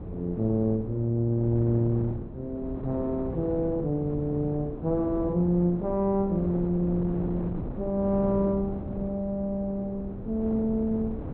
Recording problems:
treble cut off; nothing above 4.1 kHz
wind on the microphone; below 340 Hz, SNR 9 dB

